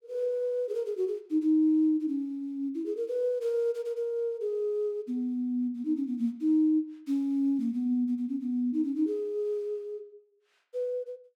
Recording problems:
none

